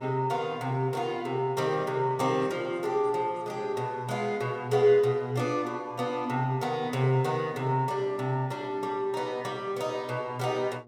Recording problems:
electrical hum; 60 Hz, harmonics up to 1.2 kHz, SNR 24 dB

